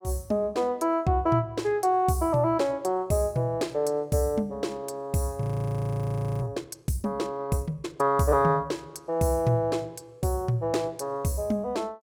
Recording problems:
audio freezing; at 5.5 s for 1 s

